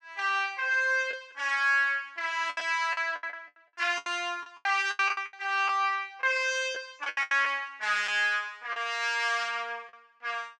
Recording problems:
packet loss; 10% of the sound replaced, filled with the last packet

